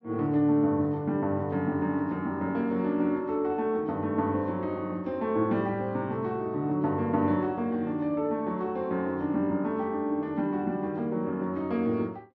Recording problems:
low-pass filter; nothing above 7.5 kHz

